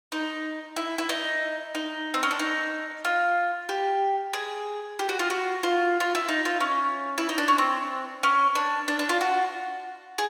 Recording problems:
none

